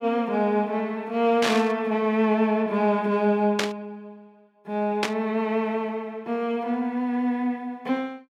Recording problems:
burst of static; at 1.5 s, at 3.5 s and at 5 s; peak +4 dB vs average level

